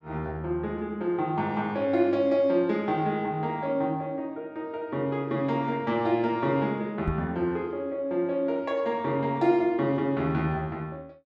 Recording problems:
microphone thump; at 7 s; peak -1 dB vs average level

